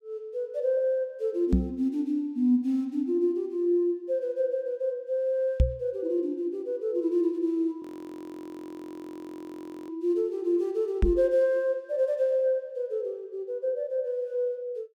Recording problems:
knock on the microphone; at 1.5 s, at 5.5 s and at 11 s; peak +9 dB vs average level
audio freezing; at 8 s for 2 s

